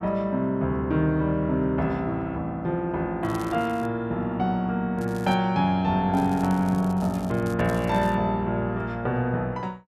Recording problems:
crackle; at 3 s, at 5 s and from 6 to 8 s; loose cable, SNR 23 dB

